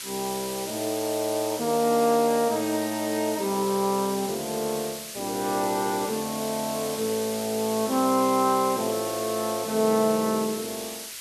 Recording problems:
hiss; SNR 8 dB

